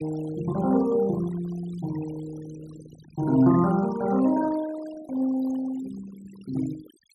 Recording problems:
denoising artefacts; signal-to-artefact ratio 17 dB

